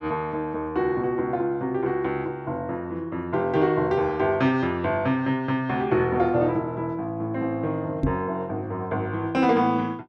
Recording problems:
knock on the microphone; at 8 s; peak +5 dB vs average level

